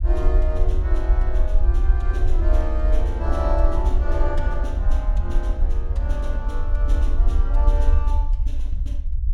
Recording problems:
rumble; below 56 Hz, SNR -9 dB

